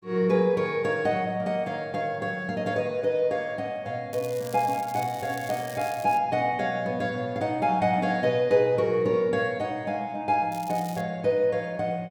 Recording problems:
crackle; from 4 to 6 s and at 11 s; loose cable, SNR 18 dB

